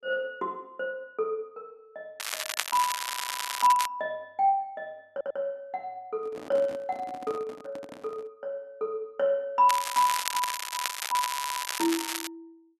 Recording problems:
crackle; from 2 to 4 s and from 9.5 to 12 s; loose cable, SNR 2 dB
stutter; at 3 s, at 5 s and at 11 s
handling noise; from 6 to 8.5 s; peak -9 dB vs average level

